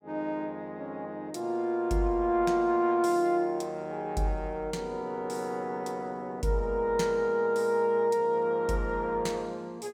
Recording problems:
none

